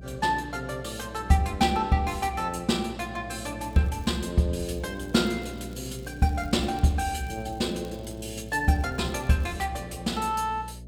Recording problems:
electrical hum; 60 Hz, harmonics up to 660 Hz, SNR 15 dB
crackle; at 3.5 s, from 4.5 to 7.5 s and from 7.5 to 9.5 s; loose cable, SNR 28 dB

